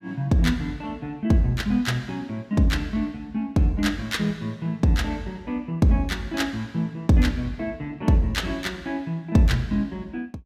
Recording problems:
none

